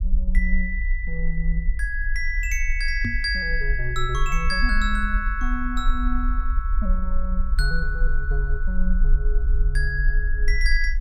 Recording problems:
rumble; below 46 Hz, strongest tone 22 Hz, SNR -1 dB
microphone thump; at 3 s; peak +5 dB vs average level

